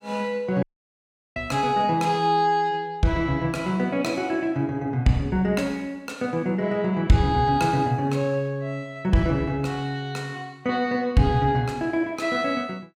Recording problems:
audio cutting out; at 0.5 s for 0.5 s

